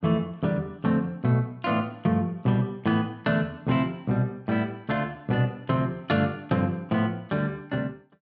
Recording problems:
none

